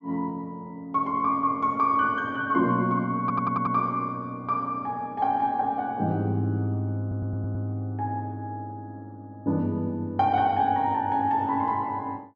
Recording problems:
stutter; at 3 s and at 7 s

